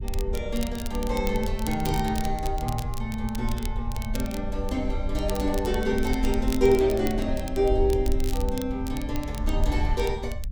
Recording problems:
low-frequency rumble; below 60 Hz, SNR 5 dB
crackle; vinyl, SNR 14 dB

